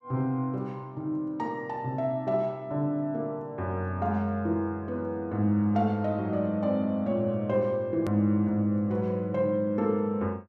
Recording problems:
click at an edit; at 8 s

